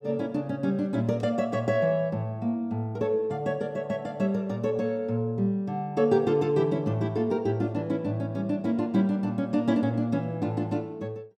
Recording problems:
none

